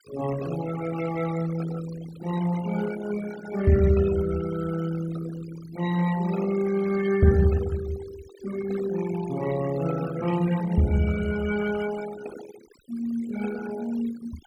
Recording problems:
denoising artefacts; signal-to-artefact ratio 14 dB

